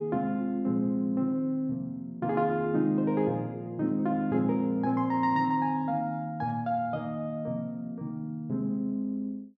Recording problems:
none

